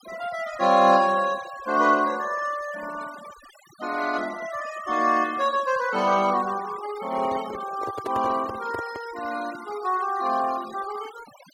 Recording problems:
denoising artefacts; signal-to-artefact ratio 18 dB
handling noise; from 7 to 9 s; peak -4 dB vs average level

